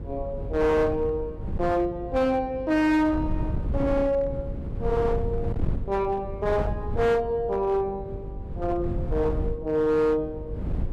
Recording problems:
distorted audio; hard clipping, signal-to-distortion ratio 11 dB
hum; 50 Hz, harmonics up to 550 Hz, SNR 17 dB
wind noise; below 140 Hz, SNR 8 dB

